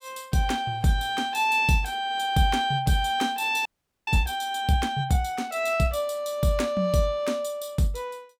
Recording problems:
audio freezing; at 3.5 s

